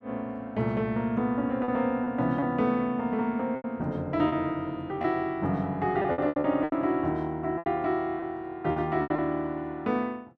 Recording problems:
lost packets; 7% of the sound replaced, filled with repeated pitch periods

